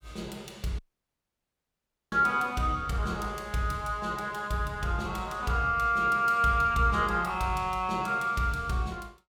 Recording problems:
dropout; at 1 s for 1.5 s

